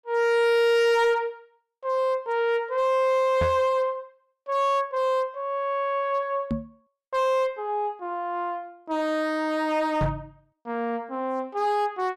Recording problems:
distorted audio; hard clipping, signal-to-distortion ratio 11 dB
microphone bump; at 3.5 s, at 6.5 s and at 10 s; peak +1 dB vs average level

